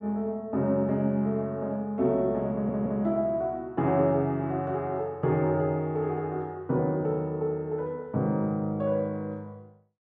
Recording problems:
audio stuttering; at 2.5 s

